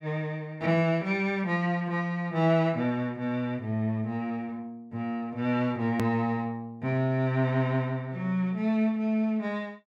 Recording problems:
edit click; at 6 s

